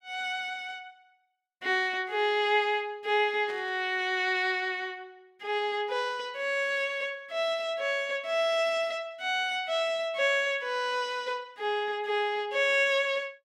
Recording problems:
static burst; at 3.5 s; peak -13 dB vs average level

